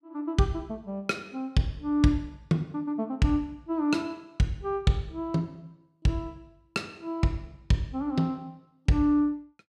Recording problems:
none

